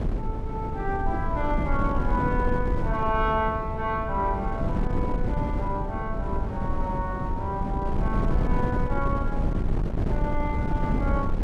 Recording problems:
wind on the microphone; below 180 Hz, SNR -1 dB

